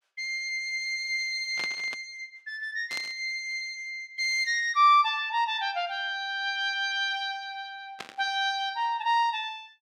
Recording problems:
burst of static; at 1.5 s, at 3 s and at 8 s; peak -6 dB vs average level

